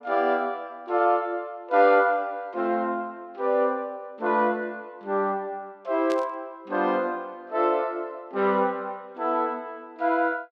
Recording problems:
static burst; at 6 s; peak -9 dB vs average level

